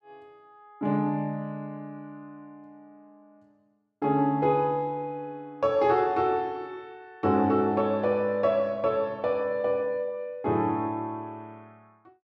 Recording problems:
none

